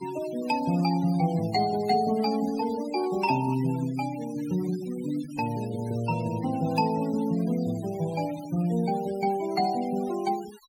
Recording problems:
denoising artefacts; signal-to-artefact ratio 18 dB

